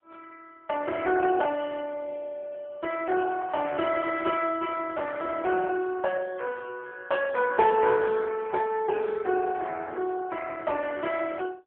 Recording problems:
phone line; 320 Hz to 3 kHz, AMR-NB

